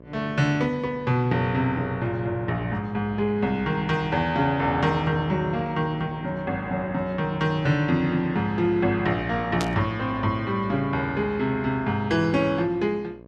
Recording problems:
hum; 60 Hz, harmonics up to 1.3 kHz, SNR 19 dB
burst of static; at 9.5 s; peak -2 dB vs average level

